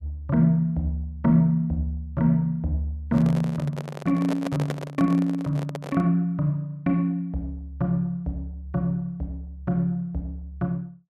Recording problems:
handling noise; from 3 to 6 s; peak -2 dB vs average level

